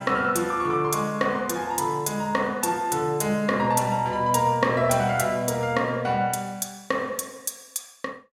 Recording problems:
none

